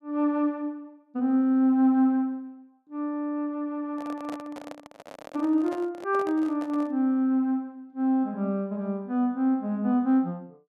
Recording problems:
handling noise; from 4 to 7 s; peak -9 dB vs average level

